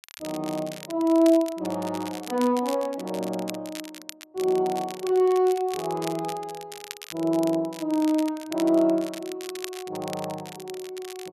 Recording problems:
crackling; vinyl, SNR 16 dB

